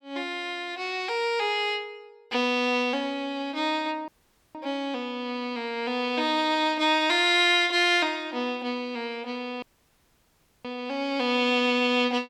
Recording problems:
dropout; at 4 s and at 9.5 s for 1 s

